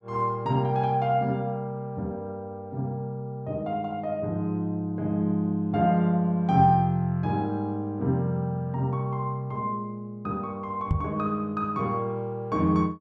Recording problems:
knock on the microphone; at 11 s; peak +6 dB vs average level

